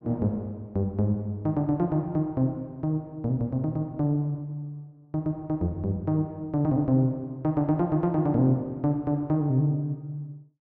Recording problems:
none

